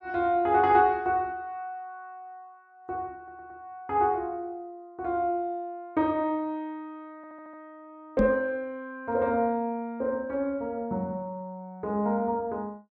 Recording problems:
audio stuttering; at 3 s and at 7 s
microphone thump; at 8 s; peak +5 dB vs average level

